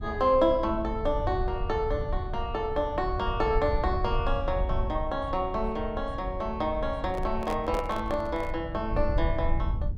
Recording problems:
low-frequency rumble; below 74 Hz, SNR 6 dB
handling noise; from 7 to 8.5 s; peak -2 dB vs average level

